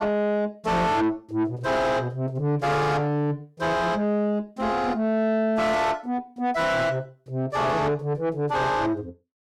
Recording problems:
distortion; soft clipping, signal-to-distortion ratio 6 dB

